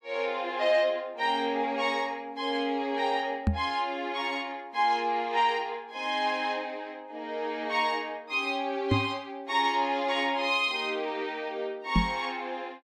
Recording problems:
knock on the microphone; at 3.5 s, at 9 s and at 12 s; peak +7 dB vs average level

